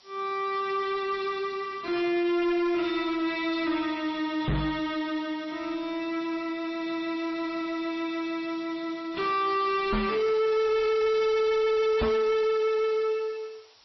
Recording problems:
lossy compression; MP3, then AAC, log-spectral distance 8 dB, nothing above 5.7 kHz
distortion; soft clipping, signal-to-distortion ratio 7 dB
hiss; SNR 27 dB
microphone bump; at 4.5 s, at 10 s and at 12 s; peak +6 dB vs average level

